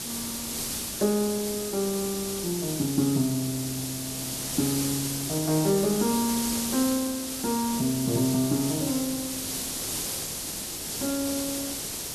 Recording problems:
background hiss; SNR 3 dB

